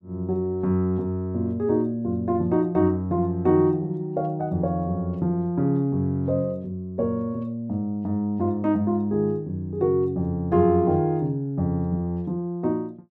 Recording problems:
none

